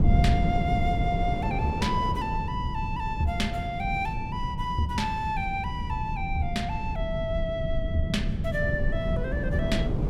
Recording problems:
low-frequency rumble; below 150 Hz, SNR 1 dB
wind on the microphone; below 440 Hz, SNR 8 dB

